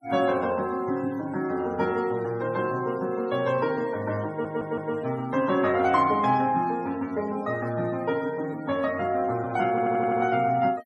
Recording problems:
noise reduction artefacts; signal-to-artefact ratio 22 dB
audio stuttering; at 4.5 s and at 9.5 s

